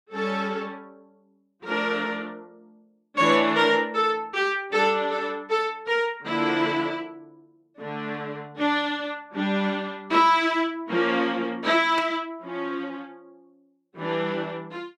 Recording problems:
static burst; at 12 s; peak -5 dB vs average level

